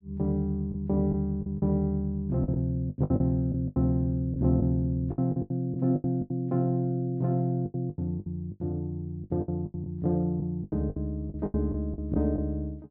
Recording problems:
packet loss; 14% of the sound replaced, filled with the last packet

